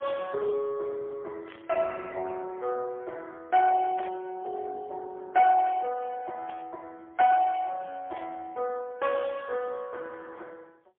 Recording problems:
phone line; 370 Hz to 3 kHz, AMR-NB, then MP3
static burst; 4 times, first at 1.5 s; peak -11 dB vs average level

